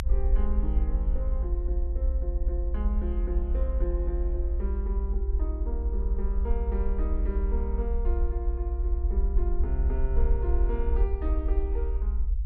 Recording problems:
low-frequency rumble; below 60 Hz, SNR -9 dB

